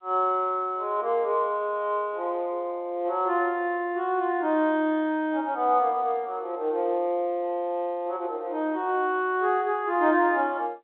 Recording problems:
telephone audio; 260 Hz to 3.7 kHz, G.711

